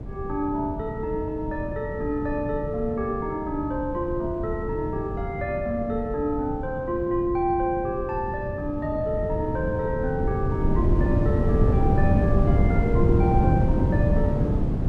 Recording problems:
wind on the microphone; below 200 Hz, SNR -1 dB

